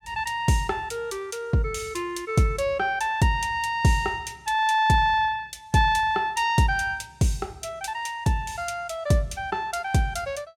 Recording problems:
none

